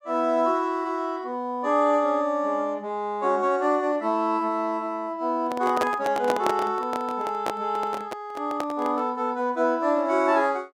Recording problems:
microphone handling noise; from 5.5 to 9 s; peak +2 dB vs average level

